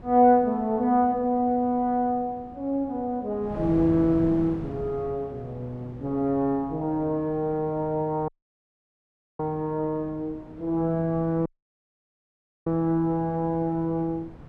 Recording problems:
wind on the microphone; below 380 Hz, SNR 16 dB
audio cutting out; at 8.5 s for 1 s and at 11 s for 1 s

